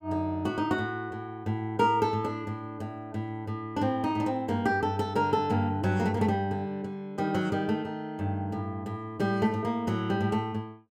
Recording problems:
none

